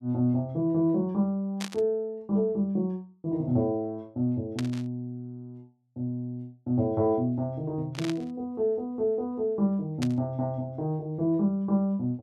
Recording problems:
burst of static; 4 times, first at 1.5 s; peak -4 dB vs average level

